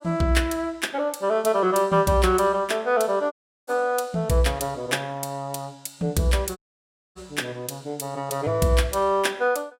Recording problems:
audio cutting out; at 3.5 s and at 6.5 s for 0.5 s

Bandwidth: 16.5 kHz